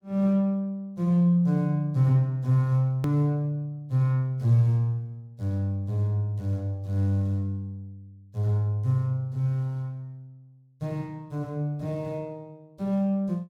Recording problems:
edit click; at 3 s

